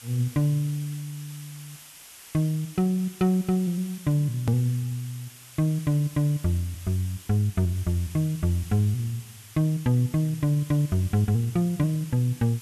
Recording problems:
hiss; slope +2 dB per octave, SNR 19 dB
click at an edit; at 4.5 s

